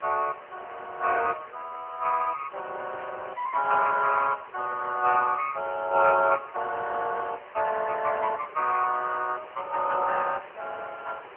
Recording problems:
telephone audio; 340 Hz to 2.6 kHz, AMR-NB
hiss; SNR 19 dB
static burst; at 3 s; peak -20 dB vs average level

